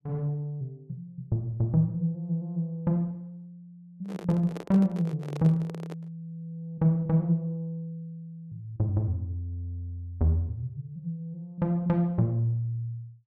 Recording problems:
handling noise; from 4 to 6 s; peak -6 dB vs average level

